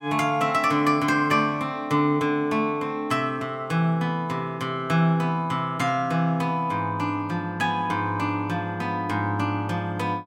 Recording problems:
none

